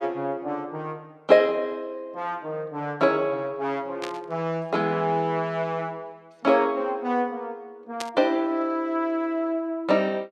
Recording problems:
burst of static; at 4 s and at 8 s; peak -3 dB vs average level

